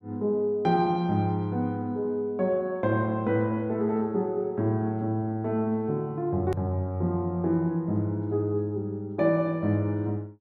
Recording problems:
hard cut with a click; at 6.5 s

